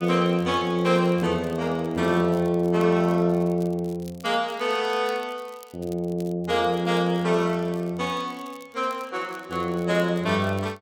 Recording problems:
crackling; vinyl, SNR 27 dB

